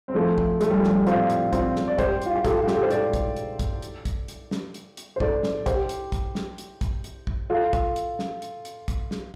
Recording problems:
distorted audio; soft clipping, signal-to-distortion ratio 12 dB

